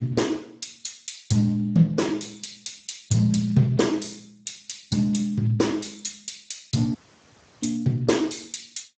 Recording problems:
codec artefacts; Speex, log-spectral distance 9 dB, nothing above 7.8 kHz
dropout; at 7 s for 0.5 s

